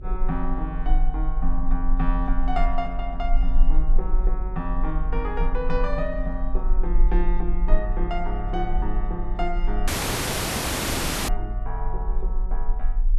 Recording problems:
low-frequency rumble; below 40 Hz, strongest tone 18 Hz, SNR -3 dB
wind noise; below 170 Hz, SNR 13 dB
audio cutting out; at 10 s for 1.5 s

